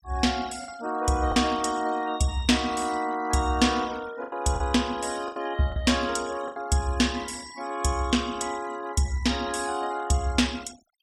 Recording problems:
denoising artefacts; signal-to-artefact ratio 19 dB
lost packets; 4% of the sound replaced, filled with the last packet

